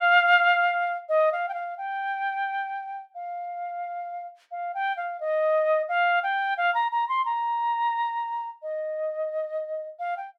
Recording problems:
none

